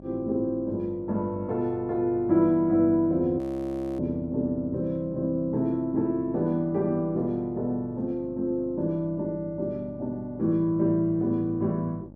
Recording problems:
electrical hum; 50 Hz, harmonics up to 900 Hz, SNR 20 dB
audio freezing; at 3.5 s for 0.5 s

